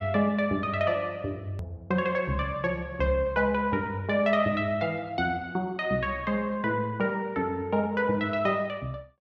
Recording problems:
edit click; at 1.5 s

